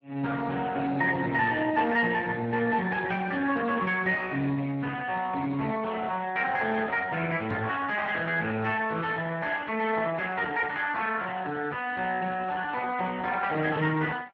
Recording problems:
codec artefacts; Speex, log-spectral distance 3 dB
microphone thump; at 7.5 s; peak -3 dB vs average level

